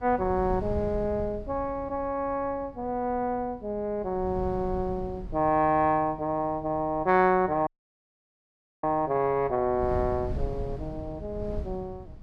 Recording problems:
wind on the microphone; below 130 Hz, SNR 13 dB
dropout; at 7.5 s for 1 s

